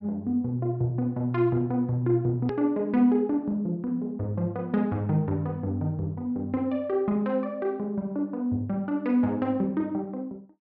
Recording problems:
treble missing; nothing above 5.6 kHz
hard cut with a click; at 2.5 s

